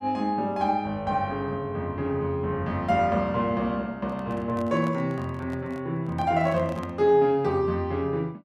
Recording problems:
handling noise; from 4 to 7 s; peak -9 dB vs average level

